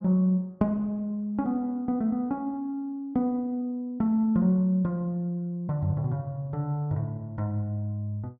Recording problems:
none

